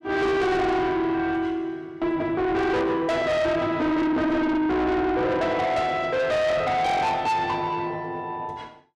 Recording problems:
distortion; soft clipping, signal-to-distortion ratio 7 dB

